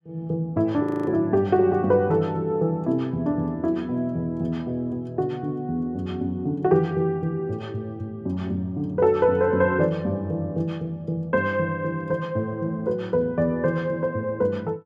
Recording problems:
frozen audio; at 1 s

